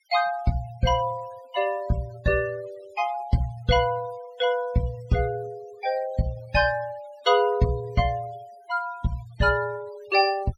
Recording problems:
noise reduction artefacts; signal-to-artefact ratio 22 dB

